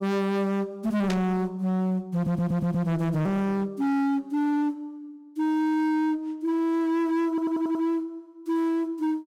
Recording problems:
distorted audio; hard clipping, signal-to-distortion ratio 7 dB
burst of static; at 1 s; peak -4 dB vs average level
stutter; at 2 s and at 7.5 s

